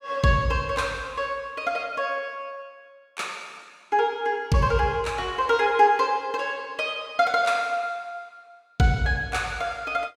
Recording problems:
none

